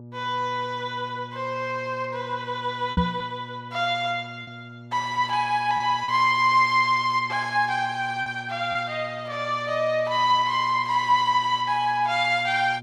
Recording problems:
electrical hum; 60 Hz, harmonics up to 840 Hz, SNR 19 dB
packet loss; 2% of the sound replaced, filled with repeated pitch periods
microphone bump; at 3 s; peak +4 dB vs average level

